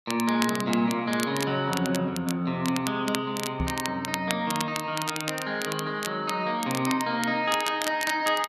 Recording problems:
crackling; vinyl, SNR 8 dB
knock on the microphone; at 3.5 s; peak +2 dB vs average level

